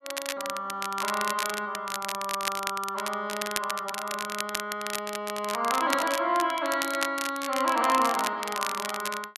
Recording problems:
crackling; vinyl, SNR 5 dB

